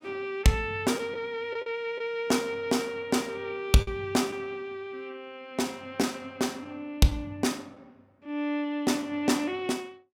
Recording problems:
packet loss; 2% of the sound replaced, filled with the last packet

